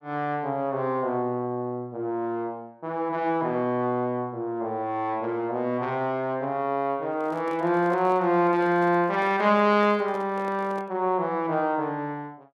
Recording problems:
microphone handling noise; from 7 to 11 s; peak -11 dB vs average level

